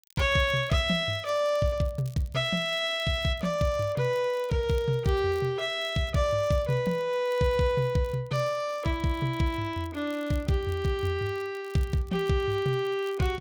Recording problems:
crackle; vinyl, SNR 27 dB

